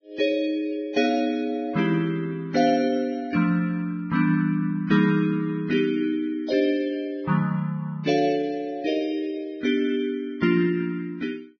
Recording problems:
codec artefacts; Vorbis, log-spectral distance 2 dB, nothing above 5.7 kHz

